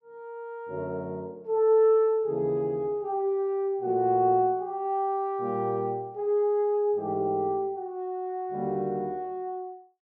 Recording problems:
none

